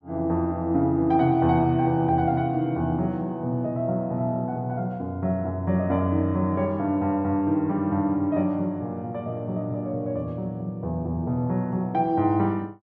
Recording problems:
none

